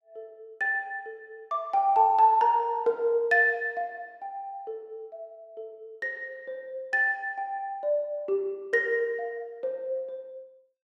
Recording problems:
none

